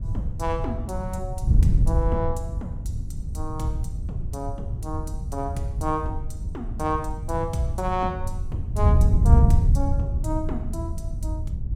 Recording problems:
wind on the microphone; below 110 Hz, SNR -5 dB

